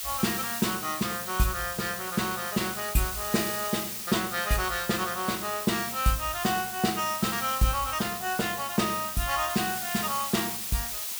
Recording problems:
hiss; slope +3 dB per octave, SNR 4 dB

